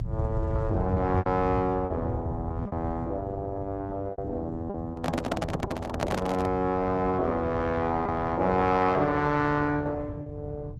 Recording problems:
codec artefacts; Opus, log-spectral distance 2 dB
low-frequency rumble; below 130 Hz, SNR 7 dB
packet loss; 4% of the sound replaced, filled with repeated pitch periods
microphone handling noise; from 5 to 6.5 s; peak +4 dB vs average level

